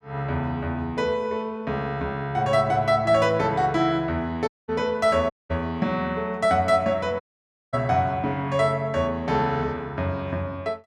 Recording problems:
dropout; at 4.5 s, at 5.5 s and at 7 s for 0.5 s

